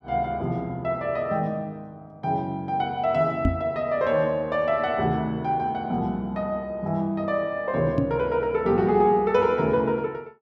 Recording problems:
microphone bump; at 3.5 s and at 8 s; peak +5 dB vs average level

